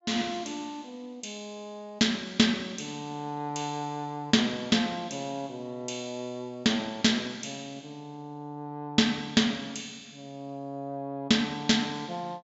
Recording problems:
treble cut off; nothing above 8 kHz

